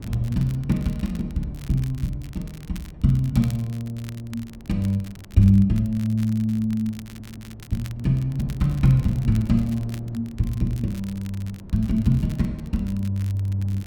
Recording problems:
wind noise; below 230 Hz, SNR 19 dB
crackling; vinyl, SNR 24 dB
audio stuttering; at 7 s

